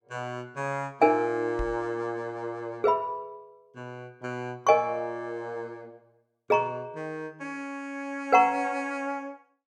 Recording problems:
knock on the microphone; at 1.5 s; peak -4 dB vs average level

